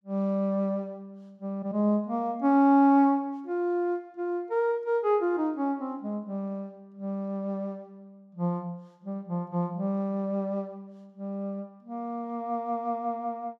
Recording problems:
none

